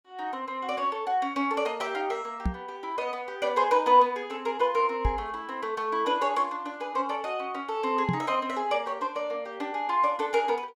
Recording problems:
microphone bump; at 2.5 s, at 5 s and at 8 s; peak +3 dB vs average level

